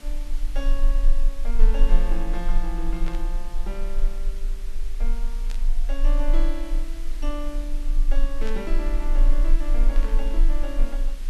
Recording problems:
background hiss; slope -2 dB per octave, SNR 11 dB
low-frequency rumble; below 30 Hz, strongest tone 20 Hz, SNR -9 dB
burst of static; 4 times, first at 3 s; peak -2 dB vs average level

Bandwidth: 13 kHz